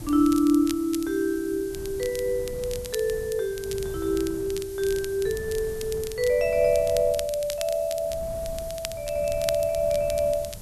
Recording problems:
background hiss; slope +6 dB per octave, SNR 19 dB
wind on the microphone; below 160 Hz, SNR 16 dB
crackling; vinyl, SNR 14 dB

